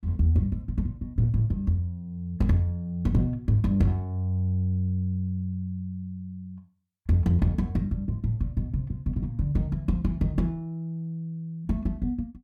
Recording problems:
distorted audio; soft clipping, signal-to-distortion ratio 12 dB

